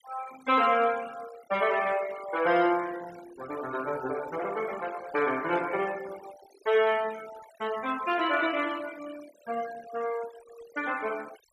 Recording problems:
noise reduction artefacts; signal-to-artefact ratio 18 dB

